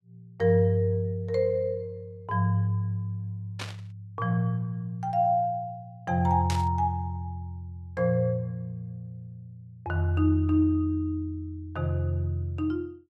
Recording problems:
burst of static; at 3.5 s and at 6.5 s; peak -3 dB vs average level

